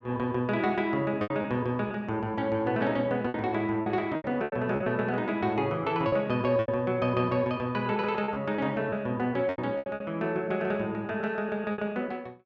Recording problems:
packet loss; 8% of the sound replaced, filled with repeated pitch periods

